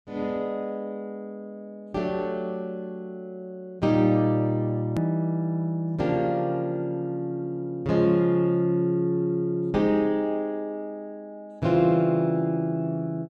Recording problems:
edit click; at 5 s

